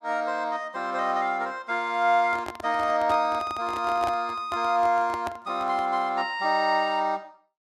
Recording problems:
handling noise; from 2 to 6 s; peak -3 dB vs average level

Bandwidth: 13.5 kHz